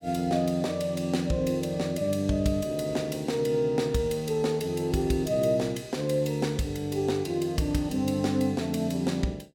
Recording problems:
none

